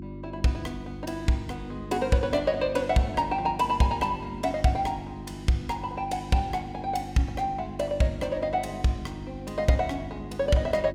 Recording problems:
hum; 50 Hz, harmonics up to 350 Hz, SNR 11 dB

